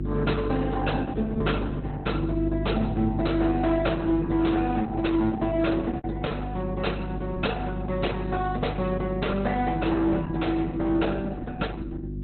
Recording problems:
codec artefacts; Opus, log-spectral distance 4 dB, nothing above 4.1 kHz
distortion; hard clipping, uneven, signal-to-distortion ratio 10 dB
hum; 50 Hz, harmonics up to 350 Hz, SNR 5 dB
packet loss; 1.5% of the sound replaced, filled with repeated pitch periods

